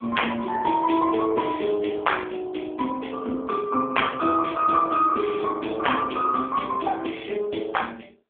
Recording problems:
telephone audio; 220 Hz to 3.4 kHz, AMR-NB

